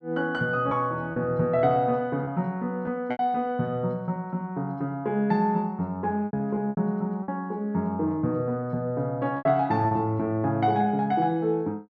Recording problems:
packet loss; 5% of the sound replaced, filled with repeated pitch periods

